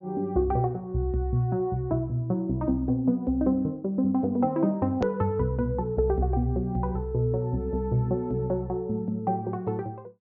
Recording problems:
low-pass filter; nothing above 6.8 kHz
click at an edit; at 5 s

